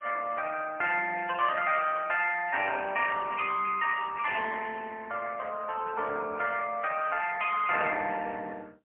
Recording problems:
phone line; 320 Hz to 3.1 kHz, AMR-NB, then MP3

